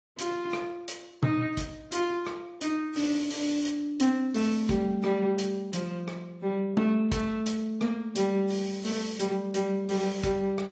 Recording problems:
lossy compression; Speex, then AAC, log-spectral distance 4 dB, nothing above 7.6 kHz

